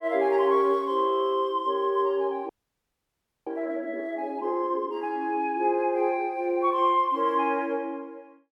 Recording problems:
audio freezing; at 2.5 s for 1 s

